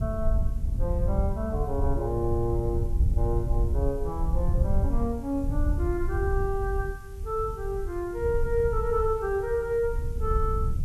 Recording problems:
hiss; slope +1 dB per octave, SNR 27 dB
wind on the microphone; below 78 Hz, SNR 0 dB

